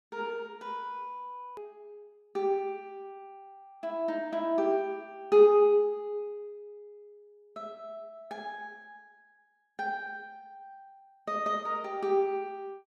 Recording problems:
edit click; at 1.5 s

